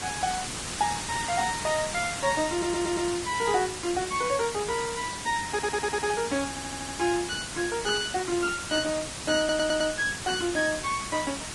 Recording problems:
lossy codec; Vorbis, log-spectral distance 12 dB, nothing above 10.4 kHz
background hiss; slope -1 dB per octave, SNR 6 dB
stutter; 4 times, first at 2.5 s

